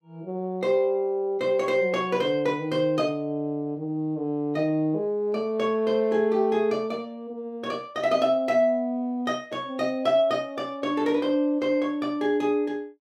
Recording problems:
none

